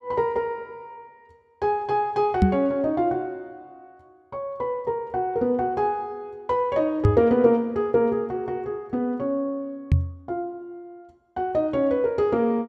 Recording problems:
knock on the microphone; at 2.5 s, at 7 s and at 10 s; peak +9 dB vs average level

